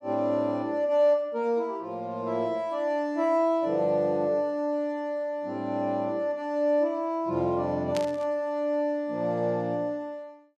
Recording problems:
static burst; at 8 s; peak -5 dB vs average level

